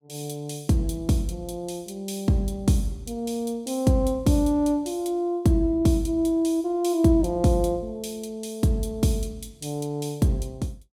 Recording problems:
none

